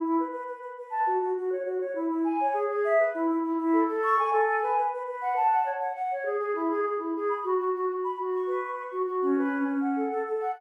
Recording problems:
none

